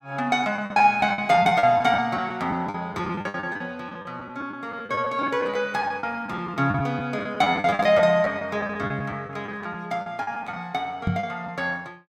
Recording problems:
packet loss; 14% of the sound replaced, filled with the last packet
microphone thump; at 11 s; peak +2 dB vs average level

